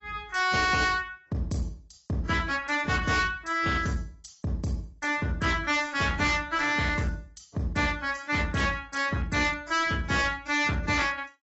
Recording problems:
lossy codec; AAC, log-spectral distance 4 dB, nothing above 7.6 kHz
distorted audio; hard clipping, uneven, signal-to-distortion ratio 6 dB

